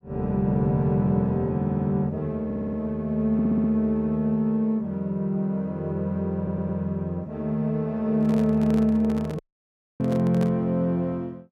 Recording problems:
audio stuttering; 4 times, first at 1.5 s
handling noise; from 8 to 11 s; peak -5 dB vs average level
audio cutting out; at 9.5 s for 0.5 s

